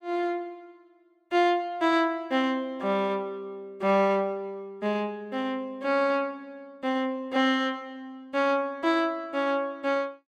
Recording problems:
none

